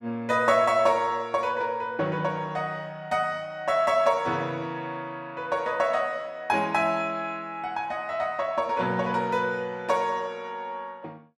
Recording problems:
none

